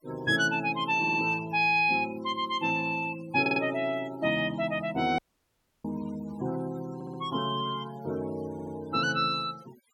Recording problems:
denoising artefacts; signal-to-artefact ratio 21 dB
stutter; 4 times, first at 1 s
dropout; at 5 s for 0.5 s

